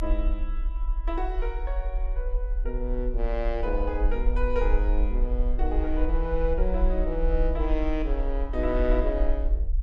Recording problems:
low-frequency rumble; below 44 Hz, strongest tone 30 Hz, SNR -2 dB

